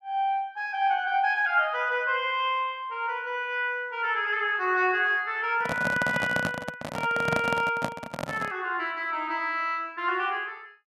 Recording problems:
microphone handling noise; from 5.5 to 8.5 s; peak +2 dB vs average level

